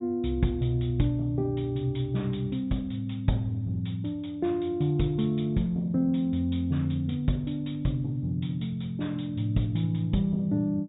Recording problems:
low-pass filter; nothing above 4 kHz

